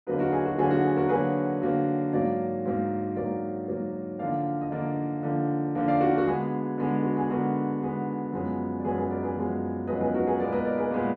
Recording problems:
none

